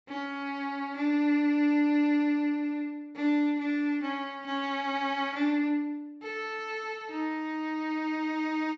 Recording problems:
low-pass filter; nothing above 8 kHz

